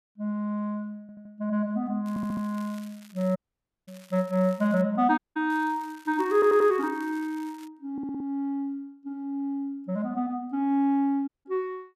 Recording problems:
audio stuttering; 4 times, first at 1 s
crackle; from 2 to 5 s and from 5.5 to 7.5 s; loose cable, SNR 25 dB
audio cutting out; at 3.5 s for 0.5 s, at 5 s and at 11 s

